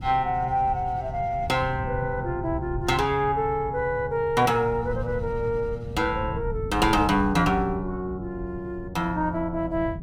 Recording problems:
wind on the microphone; below 130 Hz, SNR 11 dB

